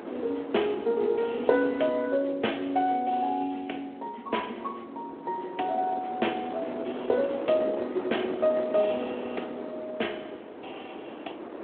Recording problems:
phone line; 240 Hz to 3.4 kHz, Speex
wind on the microphone; below 720 Hz, SNR 10 dB

